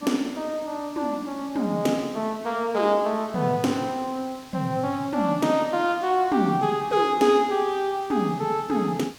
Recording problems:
background hiss; slope -1 dB per octave, SNR 22 dB

